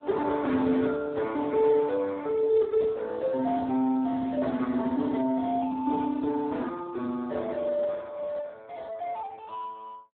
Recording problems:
phone line; 150 Hz to 2.1 kHz, Speex

